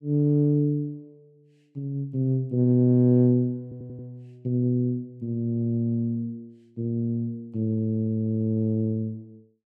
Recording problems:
stutter; at 3.5 s

